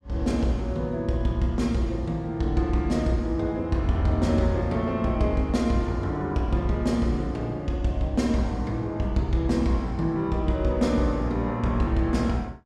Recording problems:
none

